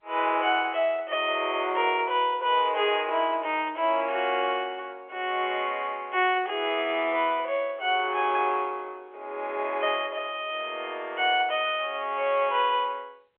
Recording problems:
phone line; 320 Hz to 3.5 kHz, G.711

